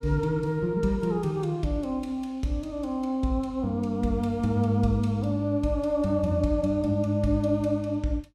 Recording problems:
none

